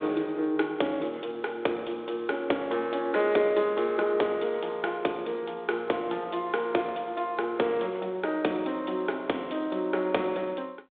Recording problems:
phone line; 280 Hz to 3.6 kHz, G.726

